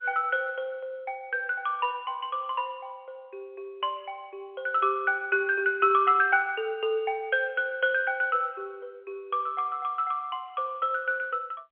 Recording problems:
telephone audio; 300 Hz to 3.2 kHz, G.711

